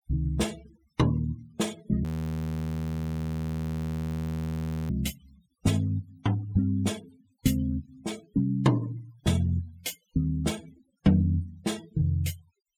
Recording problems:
noise reduction artefacts; signal-to-artefact ratio 22 dB
frozen audio; at 2 s for 3 s

